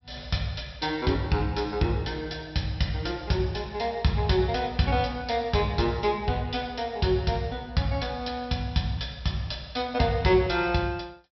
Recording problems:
low-pass filter; nothing above 5.6 kHz

